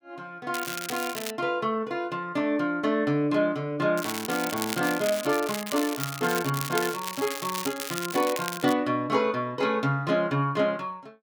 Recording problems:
crackle; at 0.5 s and from 4 to 8.5 s; loose cable, SNR 7 dB

